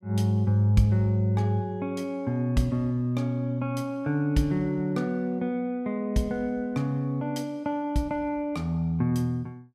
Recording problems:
none

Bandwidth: 15.5 kHz